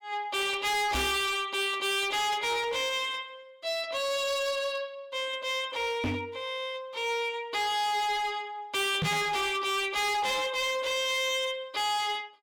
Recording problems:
distorted audio; hard clipping, signal-to-distortion ratio 7 dB
microphone thump; at 1 s, at 6 s and at 9 s; peak +3 dB vs average level

